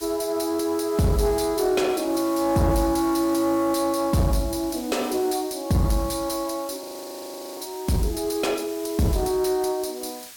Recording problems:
distorted audio; soft clipping, signal-to-distortion ratio 11 dB
hiss; slope +2 dB per octave, SNR 17 dB
audio freezing; at 7 s for 0.5 s

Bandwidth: 17.5 kHz